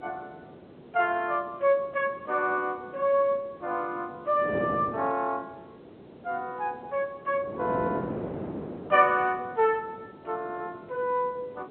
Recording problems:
telephone audio; 260 Hz to 3.5 kHz, G.711
wind noise; below 540 Hz, SNR 13 dB

